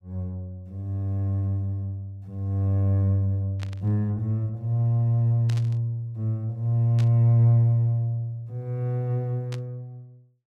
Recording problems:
burst of static; 4 times, first at 3.5 s; peak -12 dB vs average level

